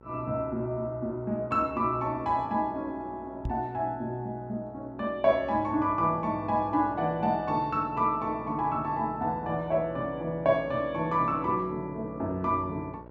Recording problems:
hum; 60 Hz, harmonics up to 1.5 kHz, SNR 20 dB
microphone thump; at 3.5 s; peak -1 dB vs average level

